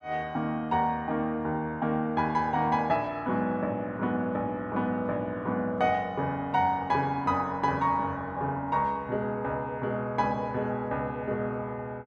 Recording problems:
none

